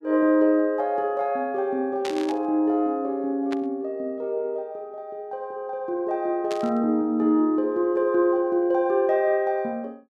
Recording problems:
burst of static; at 2 s, at 3.5 s and at 6.5 s; peak -6 dB vs average level

